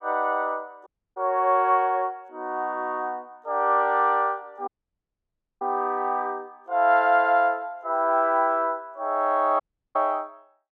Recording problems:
dropout; at 1 s, at 4.5 s for 1 s and at 9.5 s

